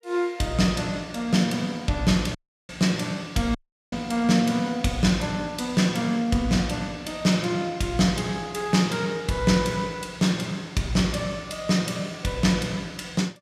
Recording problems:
audio cutting out; at 2.5 s and at 3.5 s

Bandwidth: 14.5 kHz